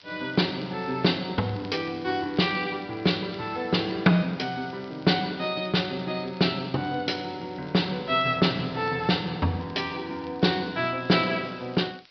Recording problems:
low-pass filter; nothing above 5.5 kHz
background hiss; slope +1 dB per octave, SNR 27 dB
crackling; vinyl, SNR 27 dB

